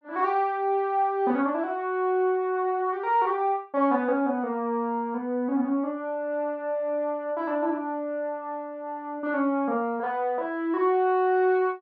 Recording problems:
none

